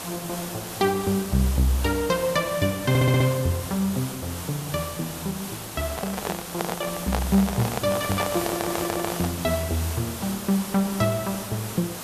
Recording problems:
background hiss; slope -3 dB per octave, SNR 8 dB
audio stuttering; at 3 s and at 8.5 s
handling noise; from 6 to 9.5 s; peak +3 dB vs average level

